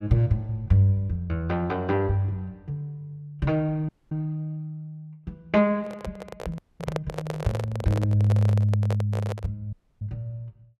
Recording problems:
dropout; at 4 s, at 6.5 s and at 9.5 s
handling noise; from 6 to 9.5 s; peak 0 dB vs average level

